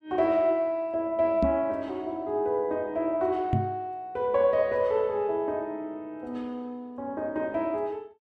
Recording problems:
microphone thump; at 1.5 s and at 3.5 s; peak +5 dB vs average level

